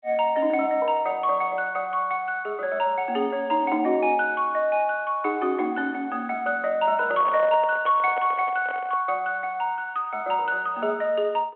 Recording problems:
telephone audio; 240 Hz to 3.3 kHz, G.726
handling noise; from 7 to 9 s; peak -8 dB vs average level

